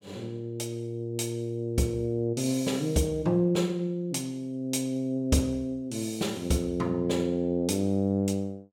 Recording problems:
none

